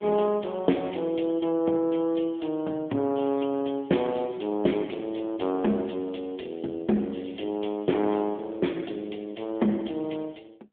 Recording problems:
phone line; 170 Hz to 3.5 kHz, AMR-NB

